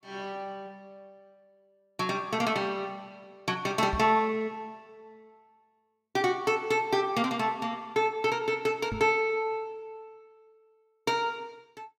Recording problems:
microphone thump; at 4 s and at 9 s; peak -2 dB vs average level

